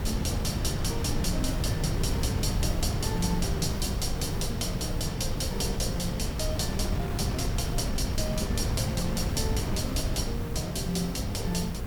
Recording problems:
hiss; SNR 18 dB
wind noise; below 180 Hz, SNR 0 dB

